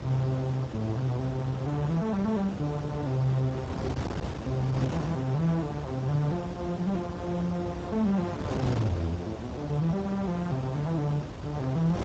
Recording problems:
lossy compression; Speex, log-spectral distance 3 dB
wind noise; below 610 Hz, SNR 7 dB

